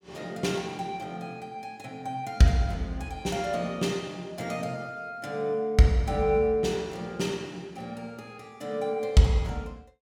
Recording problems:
none

